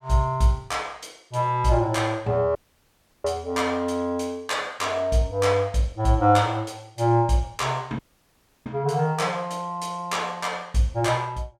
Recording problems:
dropout; at 2.5 s for 0.5 s and at 8 s for 0.5 s

